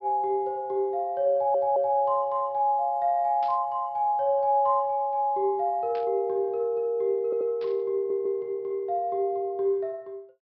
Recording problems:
treble missing; nothing above 5.5 kHz
audio stuttering; at 1.5 s, at 7 s and at 8 s
static burst; at 3.5 s, at 6 s and at 7.5 s; peak -16 dB vs average level

